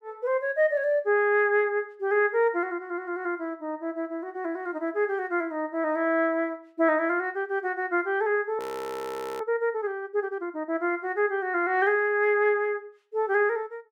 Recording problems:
frozen audio; at 8.5 s for 1 s

